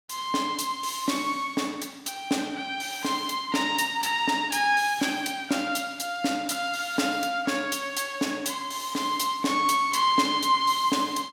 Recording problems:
none

